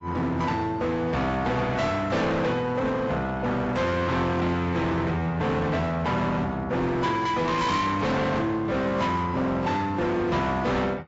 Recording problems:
lossy compression; AAC, log-spectral distance 2 dB, nothing above 7.6 kHz
distortion; hard clipping, signal-to-distortion ratio 7 dB

